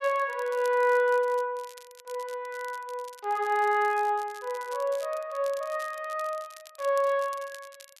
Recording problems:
crackling; vinyl, SNR 22 dB

